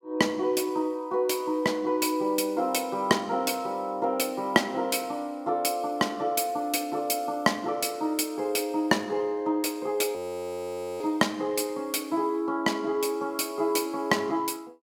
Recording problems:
frozen audio; at 10 s for 1 s

